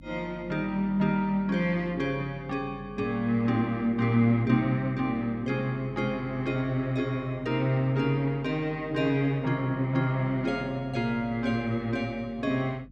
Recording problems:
hum; 50 Hz, harmonics up to 300 Hz, SNR 22 dB

